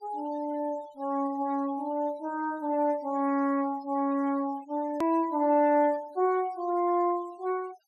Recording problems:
denoising artefacts; signal-to-artefact ratio 25 dB
hard cut with a click; at 5 s

